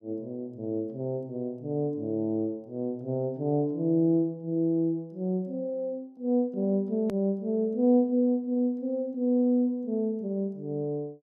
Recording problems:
click at an edit; at 7 s

